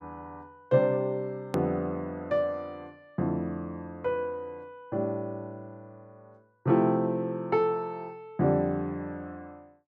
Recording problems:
hard cut with a click; at 1.5 s

